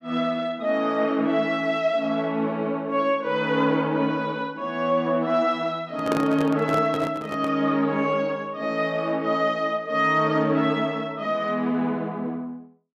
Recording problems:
handling noise; from 6 to 7.5 s; peak +1 dB vs average level

